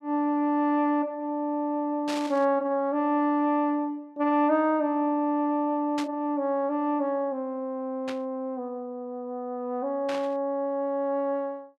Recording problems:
burst of static; 4 times, first at 2 s; peak -5 dB vs average level

